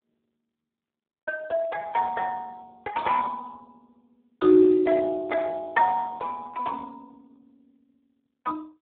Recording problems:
telephone audio; 320 Hz to 2 kHz, Speex

